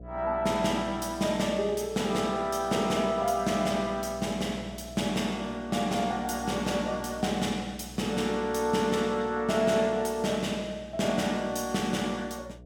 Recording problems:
hum; 60 Hz, harmonics up to 720 Hz, SNR 19 dB

